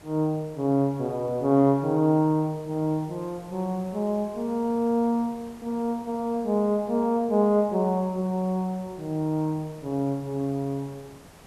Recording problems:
background hiss; slope -5 dB per octave, SNR 23 dB

